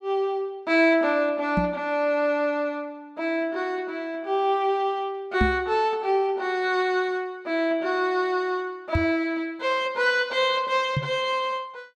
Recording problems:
knock on the microphone; 4 times, first at 1.5 s; peak +4 dB vs average level

